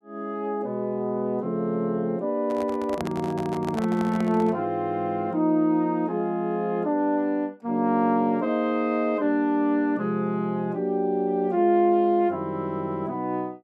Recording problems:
microphone handling noise; from 2.5 to 4.5 s; peak -3 dB vs average level

